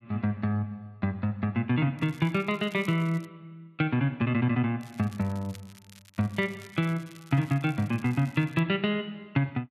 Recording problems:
crackling; from 2 to 3.5 s and from 5 to 8.5 s; loose cable, SNR 25 dB

